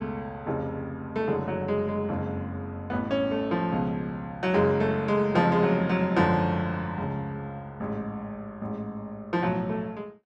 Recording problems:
none

